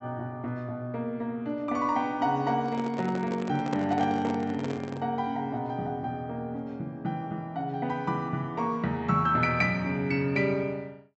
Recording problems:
treble cut off; nothing above 7.8 kHz
handling noise; from 2.5 to 5 s; peak 0 dB vs average level

